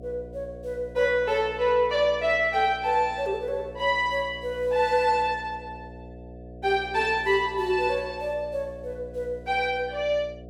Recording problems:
hum; 60 Hz, harmonics up to 720 Hz, SNR 18 dB

